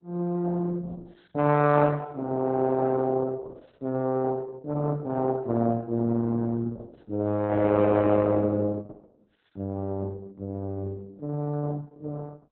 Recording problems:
lossy compression; Opus, log-spectral distance 2 dB, nothing above 4 kHz

